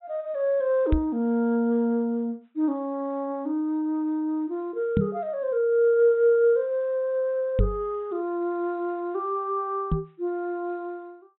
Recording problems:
treble missing; nothing above 3.9 kHz
microphone bump; 4 times, first at 1 s; peak +5 dB vs average level

